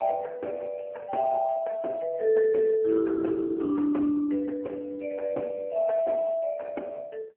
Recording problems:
phone line; 190 Hz to 3.1 kHz, AMR-NB

